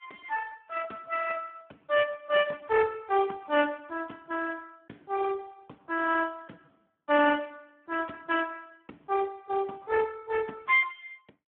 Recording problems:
phone line; 220 Hz to 2.2 kHz, Speex

